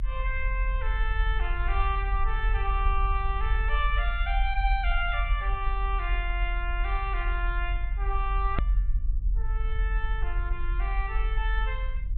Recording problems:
treble missing; nothing above 4 kHz
rumble; below 44 Hz, strongest tone 42 Hz, SNR -2 dB
click at an edit; at 8.5 s

